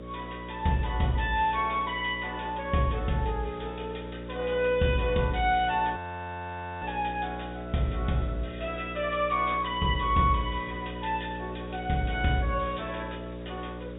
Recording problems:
treble missing; nothing above 3.4 kHz
lossy compression; G.722, log-spectral distance 4 dB
hum; 60 Hz, harmonics up to 600 Hz, SNR 10 dB
background hiss; SNR 27 dB
frozen audio; at 6 s for 1 s

